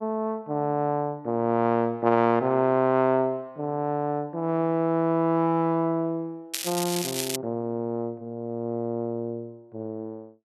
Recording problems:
crackle; at 6.5 s; loose cable, SNR 5 dB

